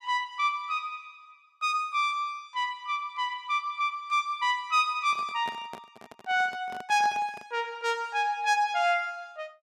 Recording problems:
microphone handling noise; from 5 to 7.5 s; peak -9 dB vs average level

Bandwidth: 14.5 kHz